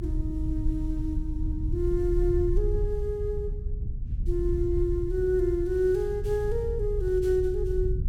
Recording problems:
rumble; below 76 Hz, strongest tone 34 Hz, SNR 3 dB

